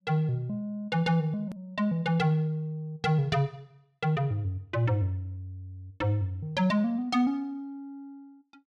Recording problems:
edit click; at 1.5 s

